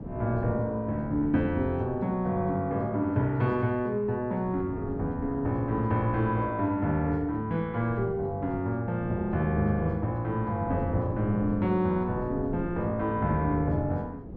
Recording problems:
wind noise; below 290 Hz, SNR 12 dB

